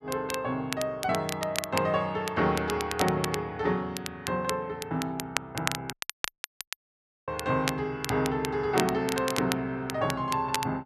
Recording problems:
crackling; vinyl, SNR 7 dB
dropout; at 6 s for 1.5 s

